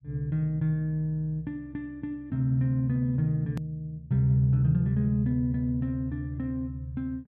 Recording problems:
hard cut with a click; at 3.5 s

